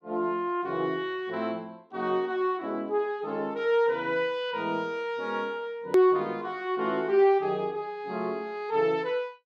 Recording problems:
hard cut with a click; at 6 s

